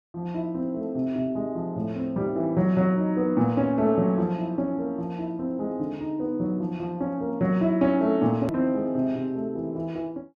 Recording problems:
hard cut with a click; at 8.5 s

